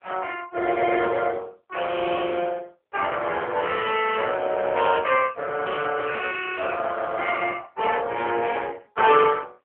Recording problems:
telephone audio; 300 Hz to 3.3 kHz, AMR-NB

